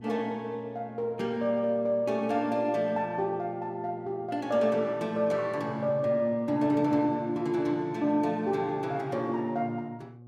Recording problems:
hum; 60 Hz, harmonics up to 840 Hz, SNR 20 dB

